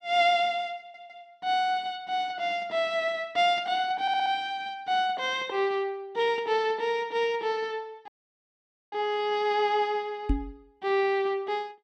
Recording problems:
stutter; at 1 s and at 4 s
audio cutting out; at 8 s for 1 s
knock on the microphone; at 10 s; peak +4 dB vs average level

